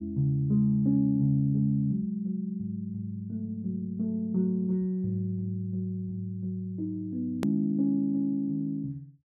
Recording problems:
hard cut with a click; at 7.5 s

